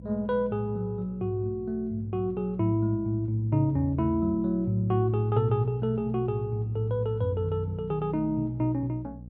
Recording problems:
mains hum; 60 Hz, harmonics up to 540 Hz, SNR 16 dB

